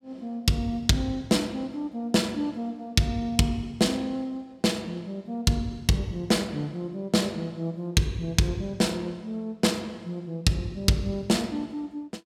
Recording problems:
none

